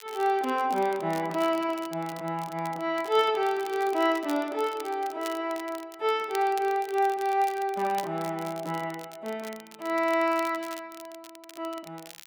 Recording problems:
crackling; vinyl, SNR 19 dB

